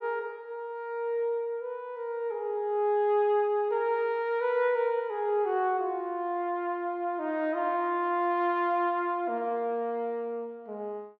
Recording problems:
none

